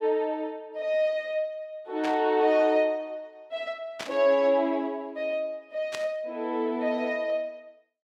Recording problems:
static burst; at 2 s, at 4 s and at 6 s; peak -4 dB vs average level

